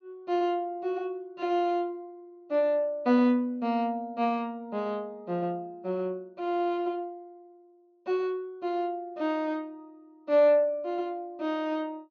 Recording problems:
treble missing; nothing above 6.9 kHz

